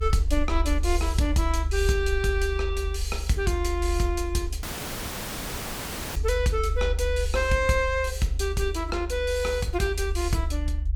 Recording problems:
low-frequency rumble; below 70 Hz, strongest tone 44 Hz, SNR 3 dB
audio cutting out; at 4.5 s for 1.5 s

